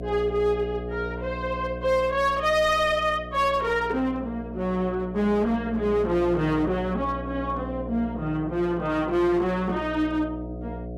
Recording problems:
distortion; hard clipping, uneven, signal-to-distortion ratio 9 dB
hum; 60 Hz, harmonics up to 720 Hz, SNR 11 dB

